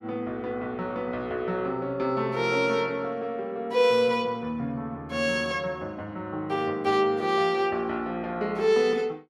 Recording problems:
none

